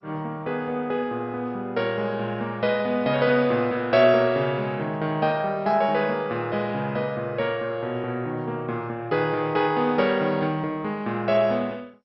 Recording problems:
codec artefacts; MP2, log-spectral distance 2 dB, nothing above 4.8 kHz

